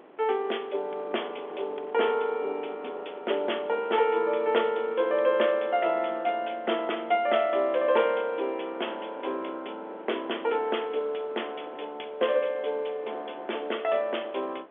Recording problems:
telephone audio; 300 Hz to 3.5 kHz, G.711
wind on the microphone; below 860 Hz, SNR 20 dB

